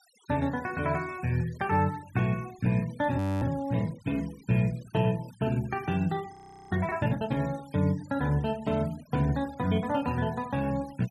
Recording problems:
denoising artefacts; signal-to-artefact ratio 22 dB
frozen audio; at 3 s and at 6.5 s

